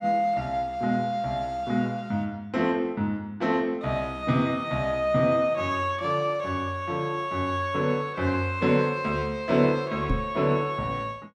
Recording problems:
microphone bump; at 10 s; peak +2 dB vs average level

